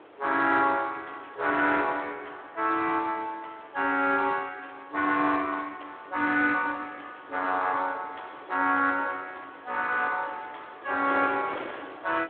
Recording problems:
telephone audio; 240 Hz to 3.9 kHz, Speex
wind noise; below 1.4 kHz, SNR 20 dB

